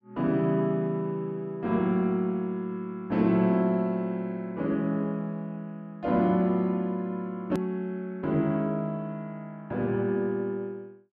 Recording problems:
edit click; at 7.5 s

